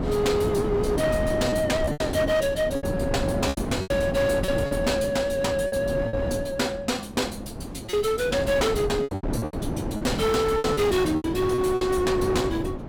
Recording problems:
distorted audio; hard clipping, uneven, signal-to-distortion ratio 12 dB
wind noise; below 430 Hz, SNR 5 dB
lost packets; 8% of the sound replaced, filled with repeated pitch periods

